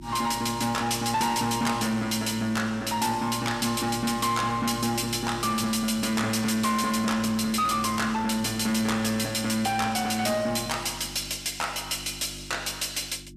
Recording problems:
distorted audio; soft clipping, signal-to-distortion ratio 12 dB
hum; 50 Hz, harmonics up to 350 Hz, SNR 19 dB

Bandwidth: 14.5 kHz